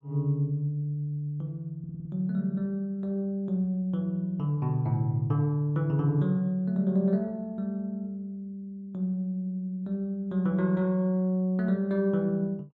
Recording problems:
stutter; at 2 s

